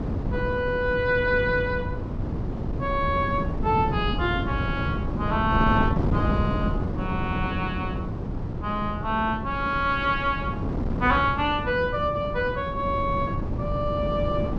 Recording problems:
wind noise; below 270 Hz, SNR 3 dB

